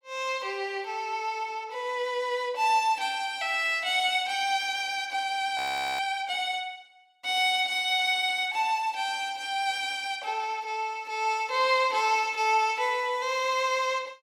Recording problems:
audio freezing; at 5.5 s

